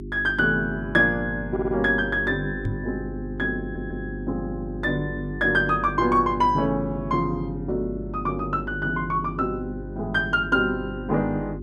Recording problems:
electrical hum; 50 Hz, harmonics up to 400 Hz, SNR 9 dB
audio stuttering; at 1.5 s and at 3.5 s
knock on the microphone; at 2.5 s; peak 0 dB vs average level

